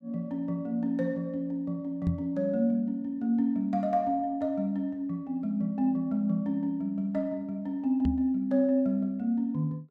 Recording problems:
microphone thump; at 2 s and at 8 s; peak +2 dB vs average level

